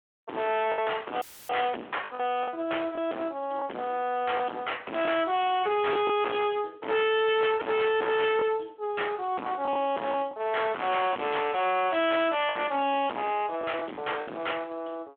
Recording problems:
telephone audio; 240 Hz to 3.4 kHz, Speex
distorted audio; hard clipping, signal-to-distortion ratio 5 dB
lost packets; 5% of the sound replaced, filled with the last packet
dropout; at 1 s; filled with static

